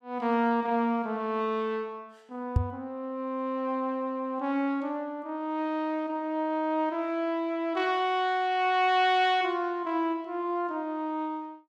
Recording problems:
microphone bump; at 2.5 s; peak +8 dB vs average level

